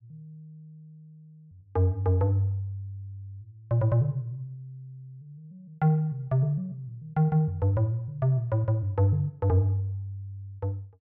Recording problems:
none

